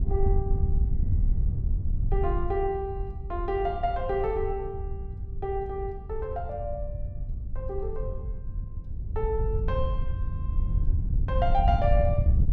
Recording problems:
wind noise; below 82 Hz, SNR -1 dB

